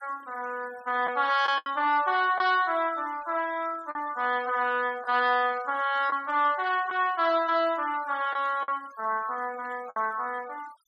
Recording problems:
noise reduction artefacts; signal-to-artefact ratio 23 dB
packet loss; 3% of the sound replaced, filled with the last packet

